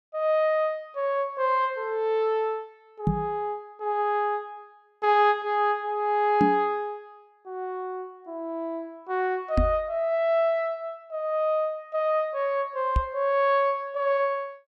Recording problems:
microphone bump; 4 times, first at 3 s; peak +6 dB vs average level

